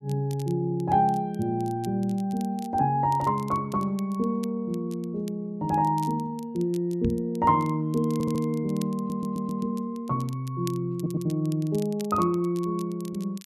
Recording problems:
crackle; vinyl, SNR 23 dB
microphone thump; at 7 s; peak +2 dB vs average level
audio stuttering; at 8 s, at 9 s and at 11 s

